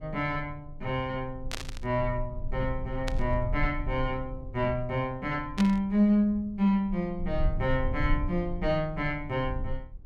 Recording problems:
low-frequency rumble; below 62 Hz, strongest tone 20 Hz, SNR 9 dB
burst of static; at 1.5 s, at 3 s and at 5.5 s; peak -1 dB vs average level

